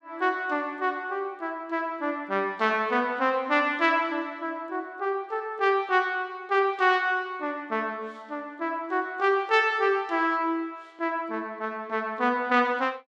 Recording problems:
none

